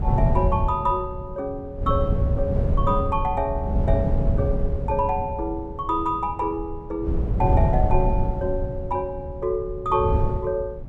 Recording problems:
wind noise; below 130 Hz, SNR -1 dB

